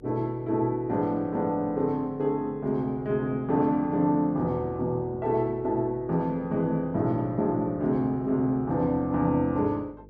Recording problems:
electrical hum; 50 Hz, harmonics up to 500 Hz, SNR 24 dB

